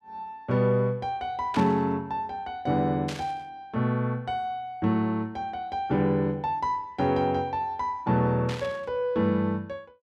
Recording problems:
burst of static; at 1.5 s, at 3 s and at 8.5 s; peak -4 dB vs average level

